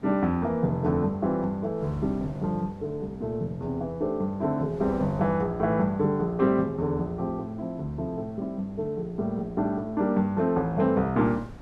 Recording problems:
wind noise; below 400 Hz, SNR 21 dB

